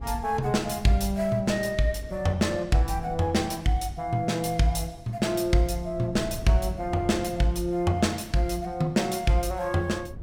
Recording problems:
wind noise; below 160 Hz, SNR 18 dB

